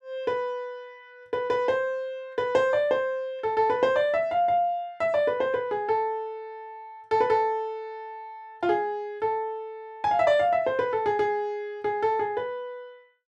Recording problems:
none

